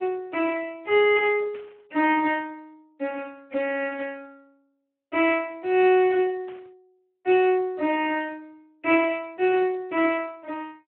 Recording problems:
phone line; 240 Hz to 3.3 kHz, Speex
static burst; 4 times, first at 1.5 s; peak -18 dB vs average level

